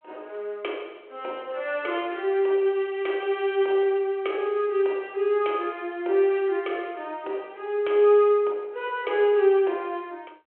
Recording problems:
telephone audio; 300 Hz to 3.3 kHz, G.726

